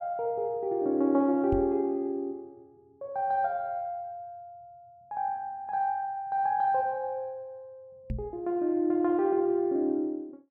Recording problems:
microphone bump; at 1.5 s and at 8 s; peak -1 dB vs average level

